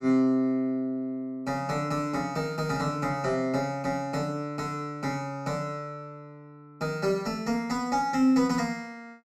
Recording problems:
none

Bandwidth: 13.5 kHz